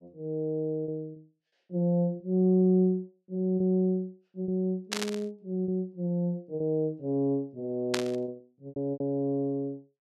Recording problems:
packet loss; 6% of the sound replaced, filled with repeated pitch periods
burst of static; at 5 s and at 8 s; peak +4 dB vs average level

